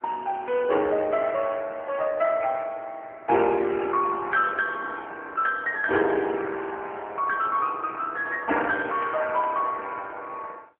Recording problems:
phone line; 260 Hz to 3.1 kHz, AMR-NB

